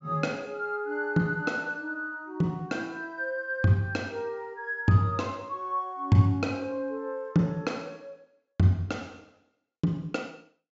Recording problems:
low-pass filter; nothing above 7.5 kHz

